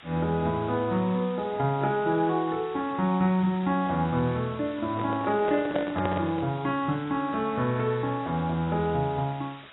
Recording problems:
codec artefacts; AAC, log-spectral distance 10 dB
hiss; SNR 20 dB
handling noise; from 5 to 6.5 s; peak 0 dB vs average level

